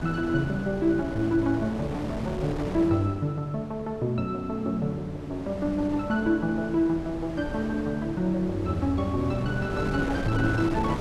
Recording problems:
wind on the microphone; below 530 Hz, SNR 9 dB

